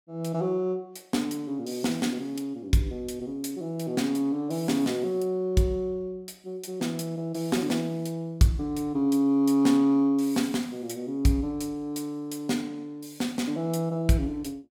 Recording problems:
none

